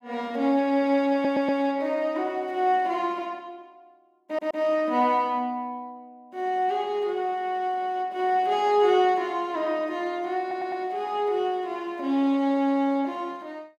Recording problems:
audio stuttering; at 1 s, at 4.5 s and at 10 s

